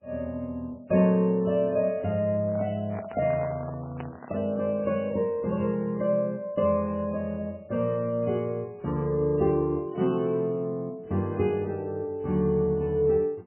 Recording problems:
codec artefacts; MP3, log-spectral distance 2 dB, nothing above 2.6 kHz
microphone handling noise; from 2.5 to 4.5 s; peak -6 dB vs average level

